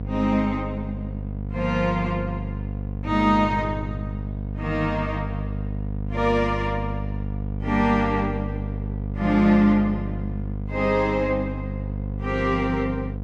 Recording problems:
hum; 50 Hz, harmonics up to 700 Hz, SNR 6 dB

